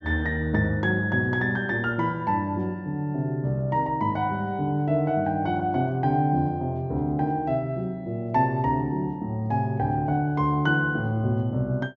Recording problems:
treble missing; nothing above 8 kHz

